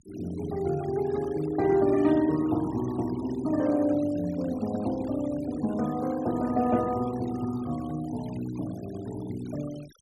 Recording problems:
noise reduction artefacts; signal-to-artefact ratio 20 dB

